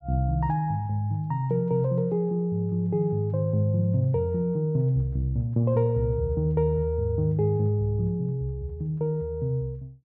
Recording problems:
none

